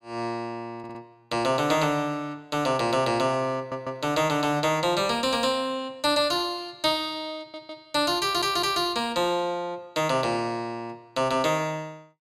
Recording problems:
stutter; 4 times, first at 1 s

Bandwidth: 15.5 kHz